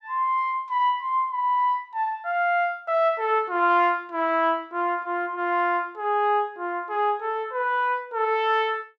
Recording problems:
none

